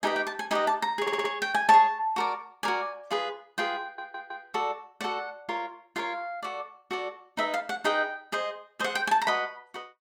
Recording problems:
stutter; at 1 s and at 4 s

